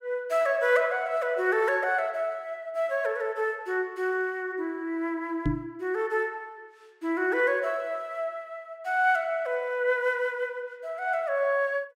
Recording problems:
microphone thump; at 5.5 s; peak +4 dB vs average level

